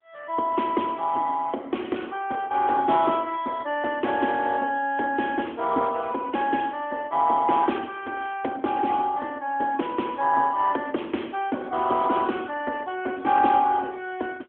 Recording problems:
phone line; 220 Hz to 3.4 kHz, AMR-NB

